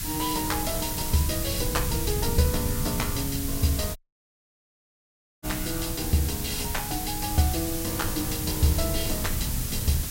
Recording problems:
hiss; slope +3 dB per octave, SNR 3 dB
rumble; below 130 Hz, SNR 5 dB
audio cutting out; at 4 s for 1.5 s

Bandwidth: 16 kHz